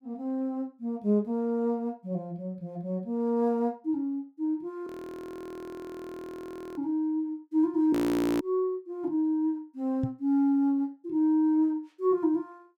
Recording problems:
frozen audio; at 5 s for 2 s and at 8 s
microphone bump; at 10 s; peak +1 dB vs average level

